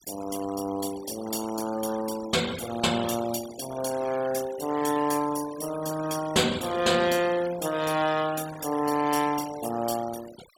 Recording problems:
denoising artefacts; signal-to-artefact ratio 13 dB

